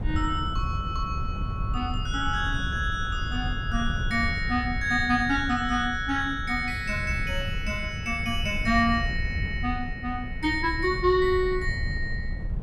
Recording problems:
wind noise; below 110 Hz, SNR 6 dB

